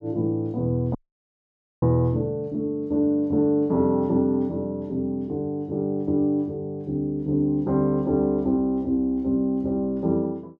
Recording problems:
dropout; at 1 s for 1 s

